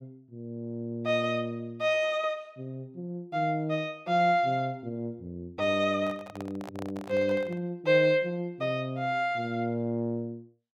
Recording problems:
handling noise; from 6 to 7.5 s; peak -9 dB vs average level

